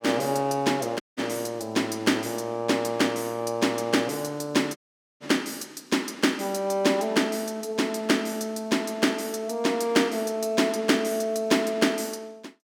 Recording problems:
dropout; at 1 s and at 5 s

